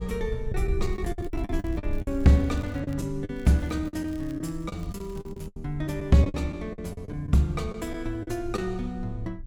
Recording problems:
wind on the microphone; below 68 Hz, SNR 10 dB
lost packets; 12% of the sound replaced, filled with the last packet
crackling; from 1 to 3 s and from 3.5 to 5.5 s; loose cable, SNR 29 dB

